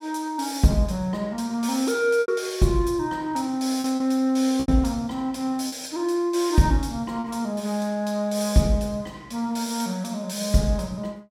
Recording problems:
lost packets; 3% of the sound replaced, filled with repeated pitch periods

